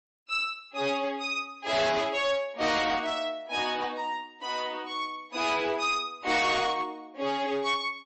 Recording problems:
lossy codec; MP3, log-spectral distance 2 dB, nothing above 8 kHz
distorted audio; hard clipping, uneven, signal-to-distortion ratio 10 dB

